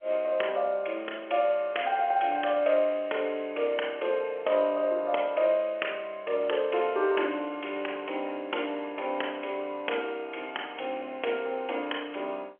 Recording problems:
phone line; 340 Hz to 3.2 kHz, G.711

